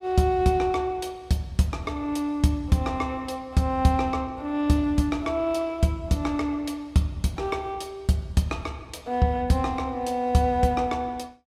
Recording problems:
none

